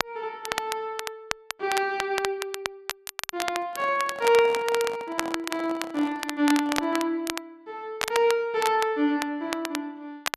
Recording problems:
crackle; vinyl, SNR 7 dB
handling noise; from 3.5 to 7 s; peak -7 dB vs average level

